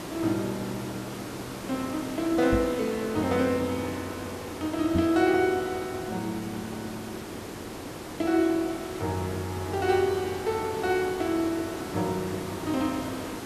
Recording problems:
hiss; slope -6 dB per octave, SNR 9 dB
microphone thump; at 2.5 s and at 5 s; peak +4 dB vs average level

